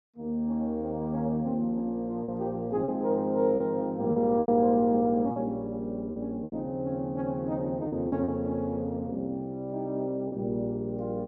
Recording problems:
packet loss; 5% of the sound replaced, filled with repeated pitch periods

